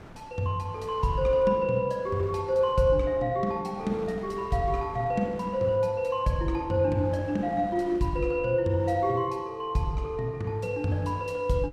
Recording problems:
wind on the microphone; below 1 kHz, SNR 21 dB

